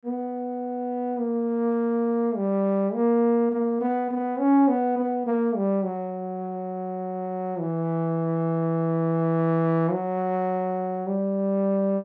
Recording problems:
none

